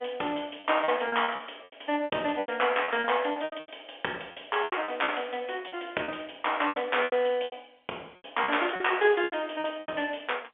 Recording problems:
phone line; 260 Hz to 3.4 kHz, G.711
packet loss; 16% of the sound replaced, filled with repeated pitch periods

